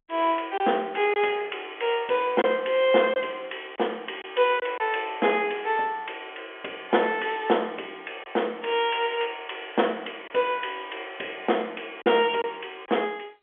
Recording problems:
telephone audio; 280 Hz to 3.4 kHz, G.711
lost packets; 2% of the sound replaced, filled with silence

